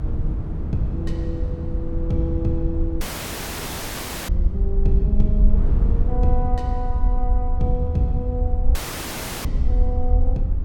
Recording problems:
low-frequency rumble; below 58 Hz, SNR -4 dB
wind noise; below 160 Hz, SNR 3 dB
audio cutting out; at 3 s for 1.5 s and at 9 s for 0.5 s

